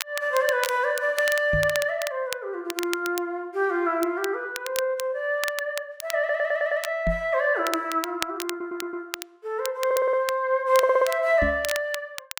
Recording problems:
crackle; vinyl, SNR 11 dB
microphone thump; at 1.5 s, at 7 s and at 11 s; peak +1 dB vs average level
stutter; 4 times, first at 6 s

